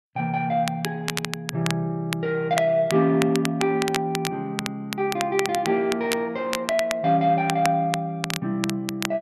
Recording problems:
crackling; vinyl, SNR 8 dB

